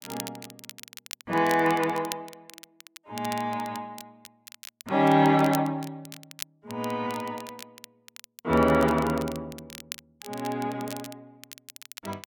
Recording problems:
crackling; vinyl, SNR 17 dB

